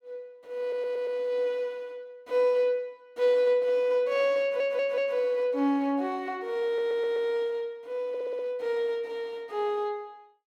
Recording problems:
audio stuttering; 4 times, first at 0.5 s

